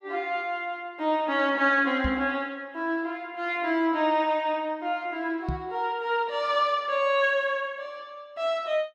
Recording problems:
knock on the microphone; at 2 s and at 5.5 s; peak 0 dB vs average level

